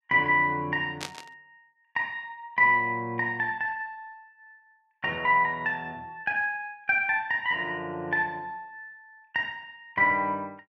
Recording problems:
burst of static; at 1 s; peak -4 dB vs average level

